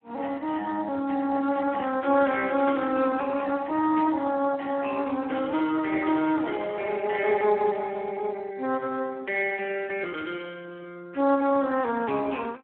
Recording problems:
telephone audio; 240 Hz to 3.1 kHz, Speex

